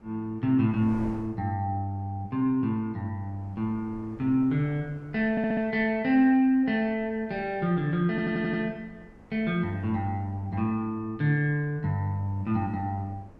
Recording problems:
wind noise; below 450 Hz, SNR 23 dB
audio stuttering; at 5.5 s and at 8 s

